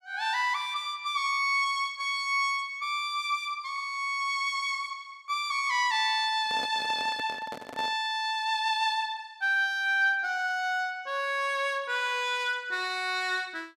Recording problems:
handling noise; from 6.5 to 8 s; peak -8 dB vs average level

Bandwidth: 15 kHz